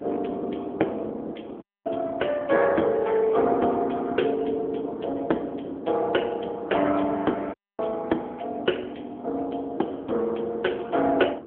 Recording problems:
phone line; 240 Hz to 2.8 kHz, AMR-NB
wind noise; below 450 Hz, SNR 12 dB
audio cutting out; at 1.5 s and at 7.5 s

